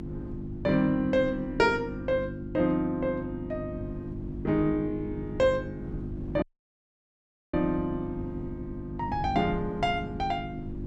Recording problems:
hum; 50 Hz, harmonics up to 350 Hz, SNR 10 dB
wind on the microphone; below 170 Hz, SNR 14 dB
dropout; at 6.5 s for 1 s

